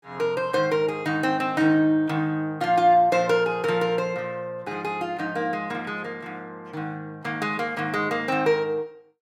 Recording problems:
none

